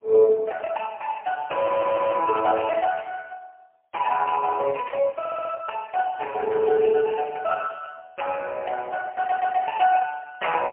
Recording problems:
telephone audio; 280 Hz to 3.1 kHz, AMR-NB, then MP3
stutter; at 1.5 s, at 5 s and at 9 s
static burst; at 2.5 s, at 5 s and at 8 s; peak -12 dB vs average level

